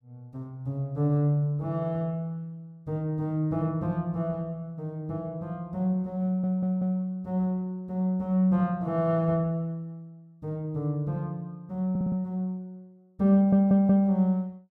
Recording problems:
audio stuttering; at 6.5 s, at 12 s and at 13 s

